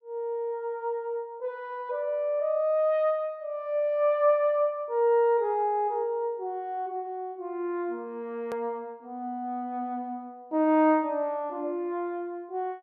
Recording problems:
hard cut with a click; at 8.5 s

